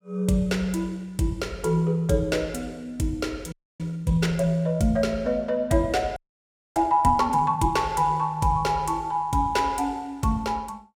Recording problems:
frozen audio; at 3.5 s and at 6 s for 0.5 s

